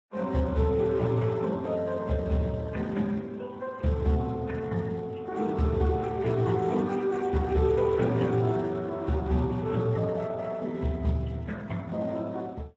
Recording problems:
codec artefacts; MP3, then Speex, log-spectral distance 3 dB, nothing above 17.7 kHz

